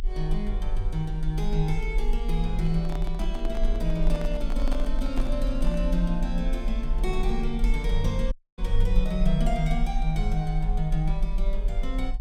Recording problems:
rumble; below 40 Hz, strongest tone 24 Hz, SNR 0 dB
handling noise; from 2.5 to 6 s; peak -4 dB vs average level
dropout; at 8.5 s

